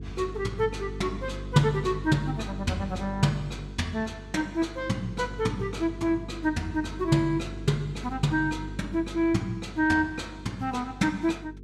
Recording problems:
electrical hum; 50 Hz, harmonics up to 450 Hz, SNR 12 dB

